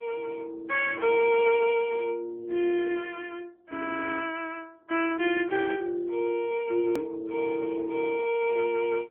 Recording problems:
telephone audio; 280 Hz to 3.2 kHz, AMR-NB
edit click; at 7 s

